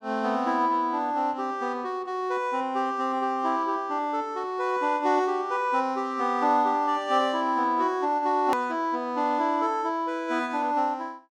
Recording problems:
edit click; at 8.5 s

